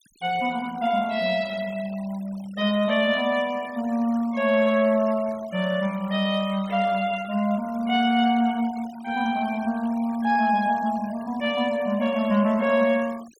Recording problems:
denoising artefacts; signal-to-artefact ratio 21 dB

